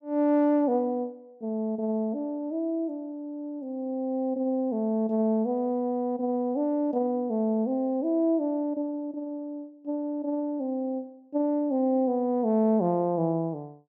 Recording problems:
none

